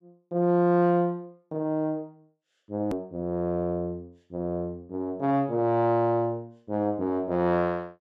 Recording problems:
edit click; at 3 s

